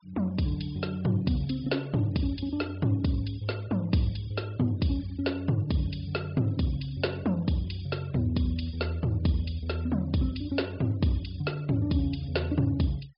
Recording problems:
treble missing; nothing above 5.5 kHz
denoising artefacts; signal-to-artefact ratio 25 dB

